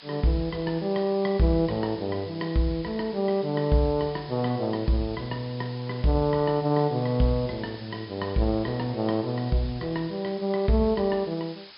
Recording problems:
treble cut off; nothing above 5.5 kHz
hiss; slope +1 dB per octave, SNR 19 dB

